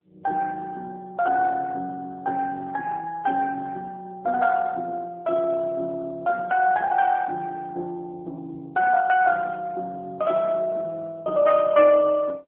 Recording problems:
phone line; 260 Hz to 3.1 kHz, AMR-NB

